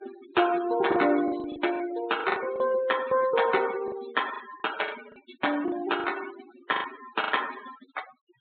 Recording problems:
treble missing; nothing above 4 kHz
denoising artefacts; signal-to-artefact ratio 13 dB
lost packets; 9% of the sound replaced, filled with the last packet

